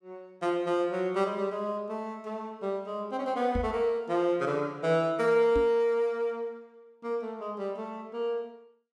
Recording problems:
microphone thump; at 3.5 s and at 5.5 s; peak -1 dB vs average level

